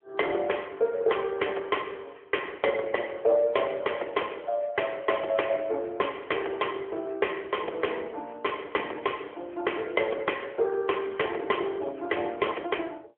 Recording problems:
telephone audio; 320 Hz to 3.2 kHz, AMR-NB

